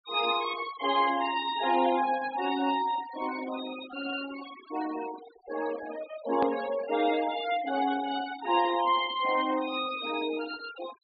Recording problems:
treble cut off; nothing above 4.7 kHz
noise reduction artefacts; signal-to-artefact ratio 14 dB
hard cut with a click; at 6.5 s

